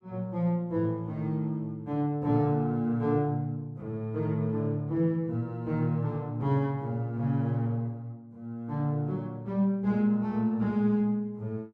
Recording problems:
none

